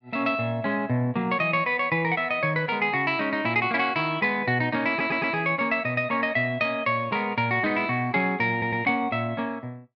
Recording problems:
stutter; at 5 s and at 8.5 s

